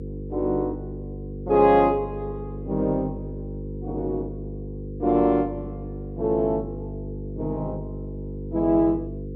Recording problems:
hum; 50 Hz, harmonics up to 500 Hz, SNR 10 dB

